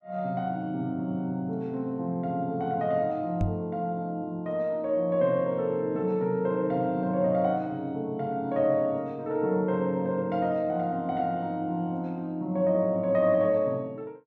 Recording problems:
microphone bump; at 3.5 s; peak +3 dB vs average level

